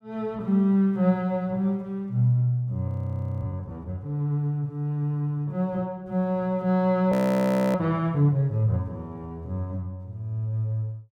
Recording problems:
frozen audio; at 3 s for 0.5 s and at 7 s for 0.5 s

